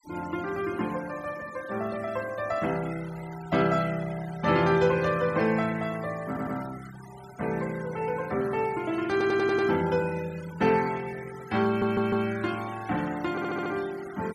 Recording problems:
denoising artefacts; signal-to-artefact ratio 17 dB
stutter; 4 times, first at 6.5 s

